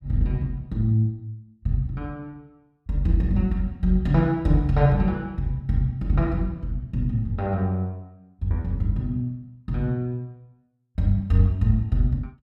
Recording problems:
none

